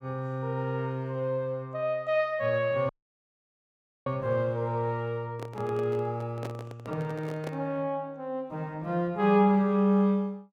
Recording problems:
audio cutting out; at 3 s for 1 s
handling noise; from 5 to 7.5 s; peak -5 dB vs average level

